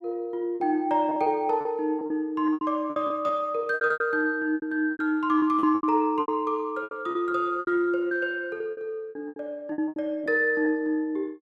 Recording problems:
lost packets; 15% of the sound replaced, filled with repeated pitch periods

